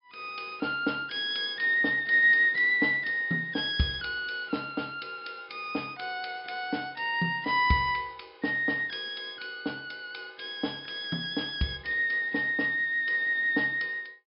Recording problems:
low-pass filter; nothing above 5.5 kHz

